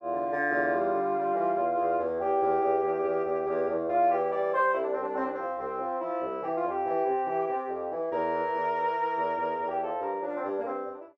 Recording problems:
none

